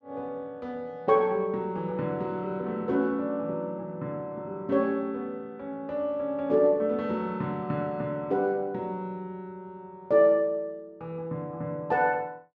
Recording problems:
none

